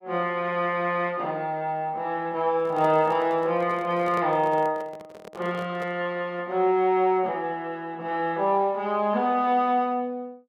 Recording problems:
microphone handling noise; from 2.5 to 6 s; peak -7 dB vs average level

